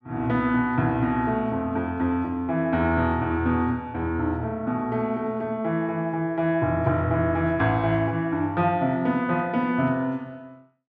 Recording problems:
none

